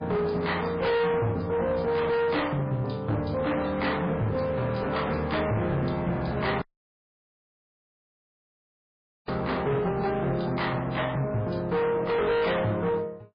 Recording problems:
codec artefacts; MP3, log-spectral distance 4 dB, nothing above 4.2 kHz
distortion; hard clipping, uneven, signal-to-distortion ratio 6 dB
dropout; at 6.5 s for 2.5 s

